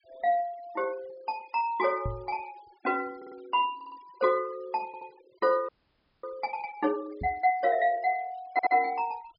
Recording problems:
treble cut off; nothing above 5.5 kHz
noise reduction artefacts; signal-to-artefact ratio 25 dB
microphone bump; at 2 s and at 7 s; peak -1 dB vs average level
audio stuttering; 4 times, first at 3 s
frozen audio; at 5.5 s for 0.5 s

